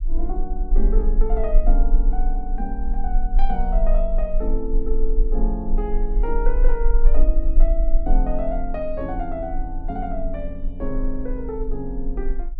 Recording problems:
low-frequency rumble; below 34 Hz, strongest tone 20 Hz, SNR -4 dB

